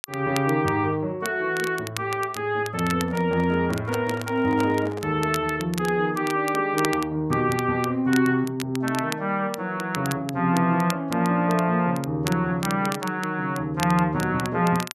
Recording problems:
crackle; vinyl, SNR 14 dB
microphone handling noise; from 3 to 5 s; peak -7 dB vs average level

